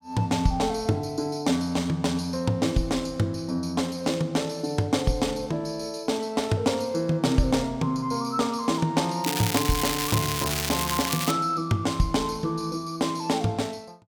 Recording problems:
crackle; from 9 to 11 s; loose cable, SNR 2 dB

